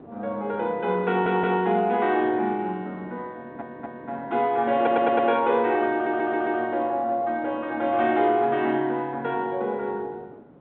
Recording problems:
telephone audio; 190 Hz to 3.8 kHz, G.726
wind on the microphone; below 560 Hz, SNR 22 dB
stutter; 4 times, first at 1 s

